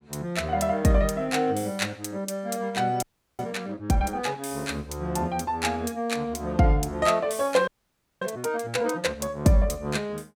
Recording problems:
frozen audio; at 3 s and at 7.5 s for 0.5 s

